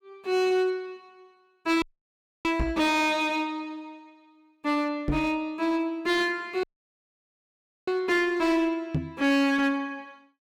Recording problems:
distortion; hard clipping, uneven, signal-to-distortion ratio 10 dB
dropout; at 2 s for 0.5 s and at 6.5 s for 1 s
microphone thump; at 2.5 s, at 5 s and at 9 s; peak +3 dB vs average level

